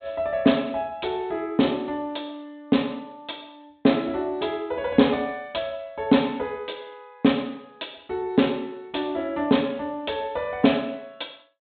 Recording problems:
low-pass filter; nothing above 4 kHz

